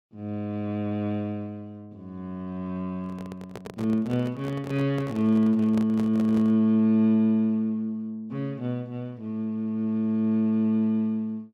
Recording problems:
microphone handling noise; from 3 to 6.5 s; peak -8 dB vs average level

